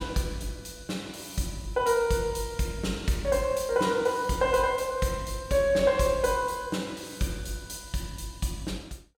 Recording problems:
none

